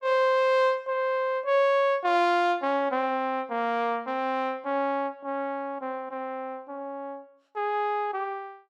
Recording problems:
none

